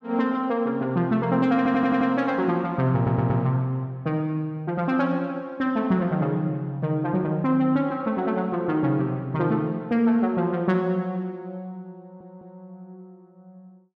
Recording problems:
stutter; at 1.5 s, at 3 s and at 12 s

